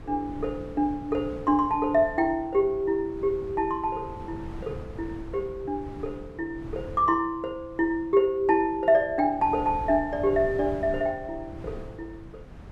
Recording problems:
wind noise; below 220 Hz, SNR 16 dB

